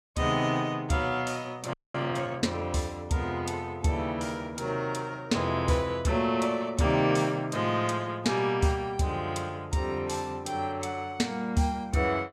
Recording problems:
frozen audio; at 1.5 s

